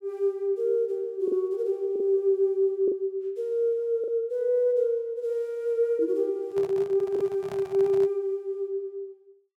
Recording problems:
packet loss; 2% of the sound replaced, filled with the last packet
microphone handling noise; from 6.5 to 8 s; peak -10 dB vs average level

